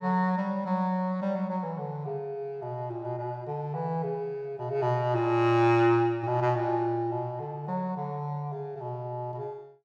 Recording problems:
none

